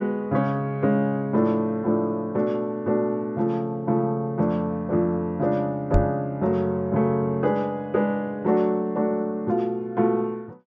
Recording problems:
treble missing; nothing above 8 kHz
knock on the microphone; at 6 s; peak +6 dB vs average level

